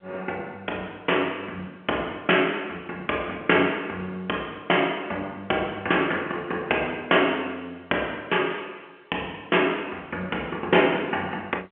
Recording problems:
telephone audio; 260 Hz to 3.5 kHz, G.711

